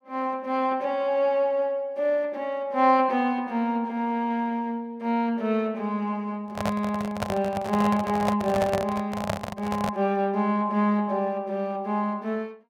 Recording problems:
handling noise; from 6.5 to 10 s; peak +2 dB vs average level

